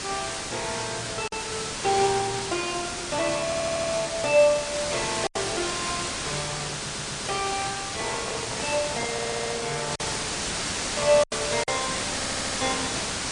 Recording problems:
lossy codec; MP3, log-spectral distance 14 dB, nothing above 9.5 kHz
background hiss; slope -1 dB per octave, SNR 1 dB
lost packets; 2% of the sound replaced, filled with silence
audio stuttering; 4 times, first at 3.5 s
handling noise; from 8 to 10 s; peak -5 dB vs average level

